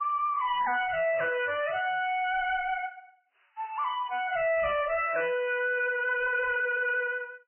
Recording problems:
lossy compression; MP3, log-spectral distance 4 dB, nothing above 2.4 kHz
distorted audio; soft clipping, signal-to-distortion ratio 9 dB

